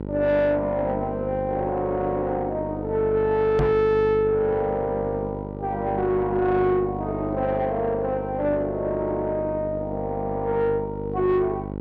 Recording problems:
distortion; soft clipping, signal-to-distortion ratio 11 dB
hum; 50 Hz, harmonics up to 1 kHz, SNR 9 dB
microphone bump; at 3.5 s; peak +6 dB vs average level

